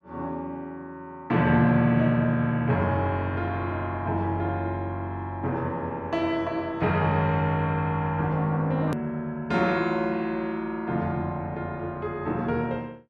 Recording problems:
click at an edit; at 9 s

